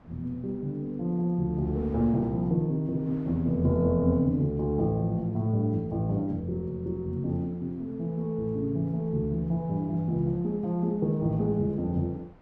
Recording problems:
wind on the microphone; below 630 Hz, SNR 26 dB

